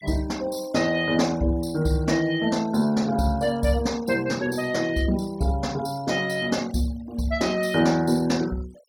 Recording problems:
noise reduction artefacts; signal-to-artefact ratio 21 dB

